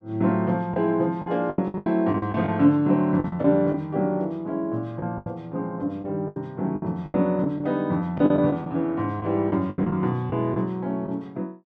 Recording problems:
lost packets; 11% of the sound replaced, filled with the last packet

